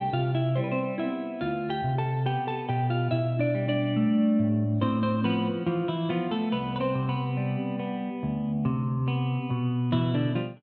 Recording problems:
none

